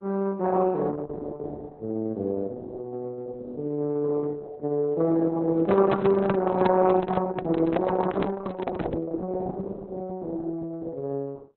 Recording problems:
lossy compression; Opus, log-spectral distance 3 dB
microphone handling noise; from 5.5 to 9 s; peak +4 dB vs average level

